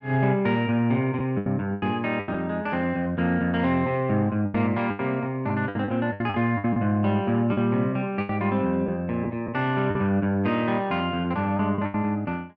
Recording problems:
lost packets; 8% of the sound replaced, filled with the last packet

